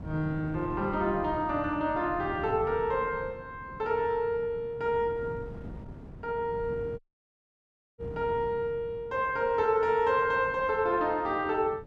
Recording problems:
wind noise; below 270 Hz, SNR 15 dB
dropout; at 7 s for 1 s

